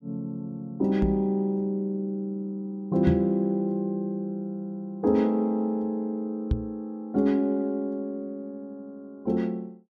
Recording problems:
microphone thump; at 1 s, at 3 s and at 6.5 s; peak +6 dB vs average level

